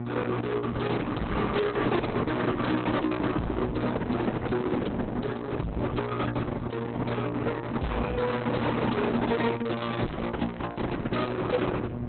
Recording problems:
codec artefacts; Opus, log-spectral distance 5 dB, nothing above 4 kHz
distorted audio; soft clipping, signal-to-distortion ratio 7 dB
hum; 60 Hz, harmonics up to 840 Hz, SNR 7 dB

